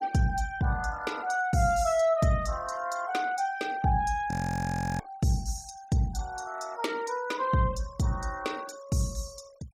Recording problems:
noise reduction artefacts; signal-to-artefact ratio 22 dB
frozen audio; at 4.5 s for 0.5 s

